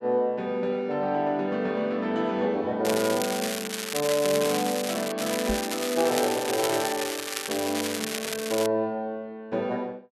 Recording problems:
crackling; from 3 to 5 s and from 5 to 8.5 s; loose cable, SNR 4 dB
knock on the microphone; at 5.5 s; peak +1 dB vs average level

